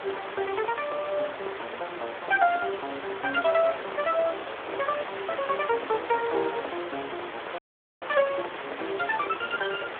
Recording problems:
telephone audio; 300 Hz to 3.5 kHz, Speex
hiss; SNR 8 dB
dropout; at 7.5 s

